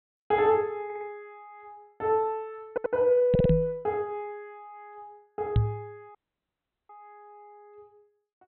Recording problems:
treble cut off; nothing above 4.1 kHz
audio stuttering; at 1 s, at 2.5 s and at 3.5 s
microphone thump; at 3.5 s and at 5.5 s; peak +7 dB vs average level
dropout; at 6 s for 0.5 s

